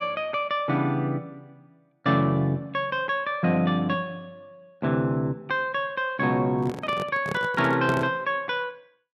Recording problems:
microphone handling noise; from 6.5 to 8 s; peak -1 dB vs average level

